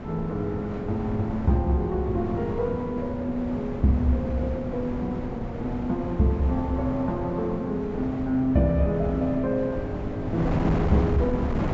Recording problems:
treble cut off; nothing above 8 kHz
wind on the microphone; below 440 Hz, SNR 6 dB

